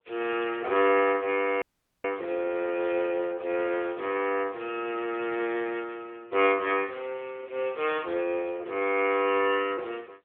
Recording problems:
telephone audio; 320 Hz to 3.4 kHz, AMR-NB
dropout; at 1.5 s

